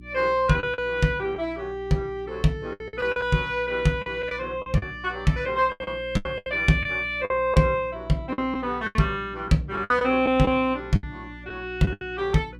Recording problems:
electrical hum; 60 Hz, harmonics up to 360 Hz, SNR 19 dB
lost packets; 10% of the sound replaced, filled with the last packet

